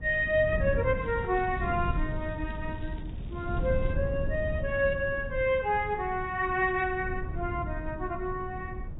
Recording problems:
lossy codec; AAC, log-spectral distance 2 dB, nothing above 3.8 kHz
wind on the microphone; below 130 Hz, SNR 6 dB
crackling; from 1 to 4 s; loose cable, SNR 28 dB

